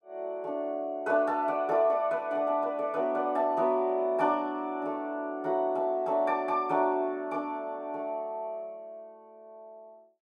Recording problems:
none

